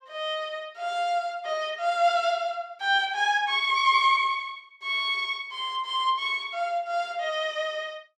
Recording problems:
none

